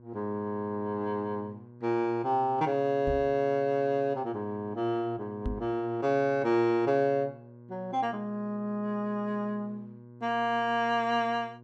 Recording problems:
electrical hum; 60 Hz, harmonics up to 1.1 kHz, SNR 21 dB
knock on the microphone; at 3 s and at 5.5 s; peak -1 dB vs average level

